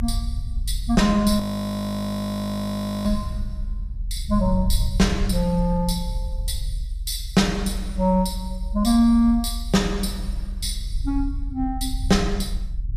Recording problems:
rumble; below 62 Hz, strongest tone 40 Hz, SNR 7 dB
frozen audio; at 1.5 s for 1.5 s

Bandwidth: 14.5 kHz